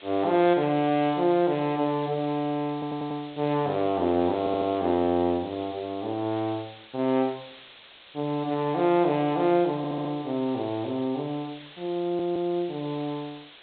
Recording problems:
low-pass filter; nothing above 4 kHz
hiss; SNR 20 dB
stutter; 4 times, first at 2.5 s

